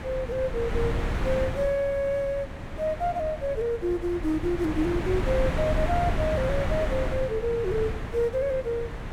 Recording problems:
wind noise; below 380 Hz, SNR 4 dB

